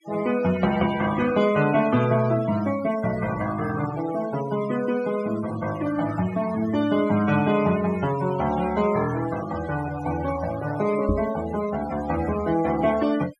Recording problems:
denoising artefacts; signal-to-artefact ratio 13 dB
microphone thump; at 11 s; peak +3 dB vs average level

